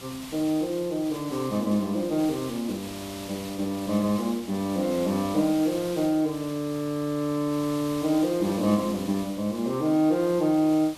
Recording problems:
background hiss; slope -1 dB per octave, SNR 15 dB

